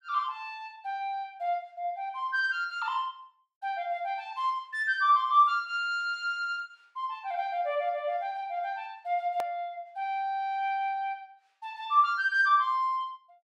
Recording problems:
click at an edit; at 9.5 s

